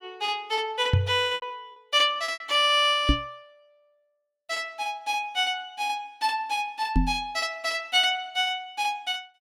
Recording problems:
packet loss; 3% of the sound replaced, filled with repeated pitch periods
microphone thump; at 1 s, at 3 s and at 7 s; peak +7 dB vs average level

